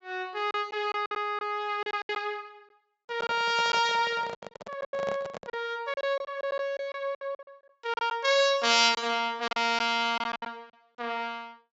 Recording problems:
treble cut off; nothing above 8 kHz
lost packets; 11% of the sound replaced, filled with silence
handling noise; from 3 to 5.5 s; peak -4 dB vs average level

